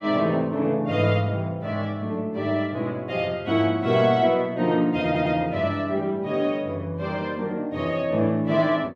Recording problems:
stutter; at 5 s

